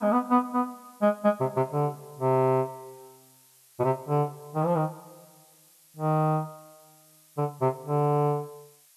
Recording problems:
background hiss; slope +4 dB per octave, SNR 28 dB

